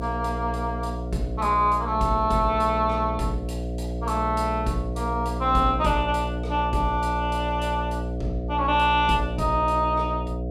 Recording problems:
hum; 60 Hz, harmonics up to 720 Hz, SNR 5 dB

